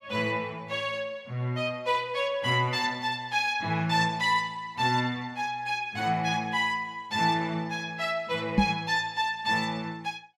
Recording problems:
knock on the microphone; at 8.5 s; peak +8 dB vs average level

